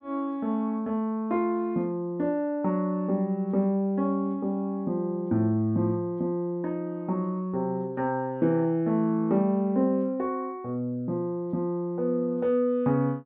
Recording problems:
none

